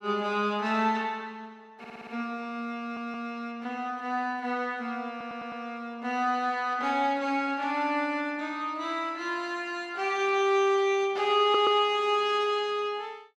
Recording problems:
stutter; 4 times, first at 2 s

